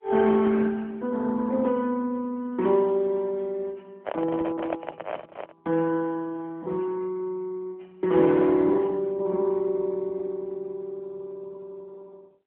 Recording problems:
phone line; 170 Hz to 3.4 kHz, AMR-NB
microphone handling noise; from 4 to 5.5 s; peak 0 dB vs average level

